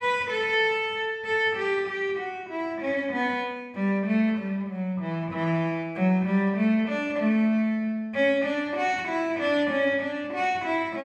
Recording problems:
none

